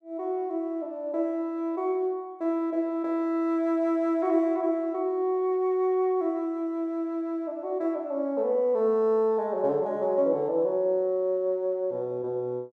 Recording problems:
none

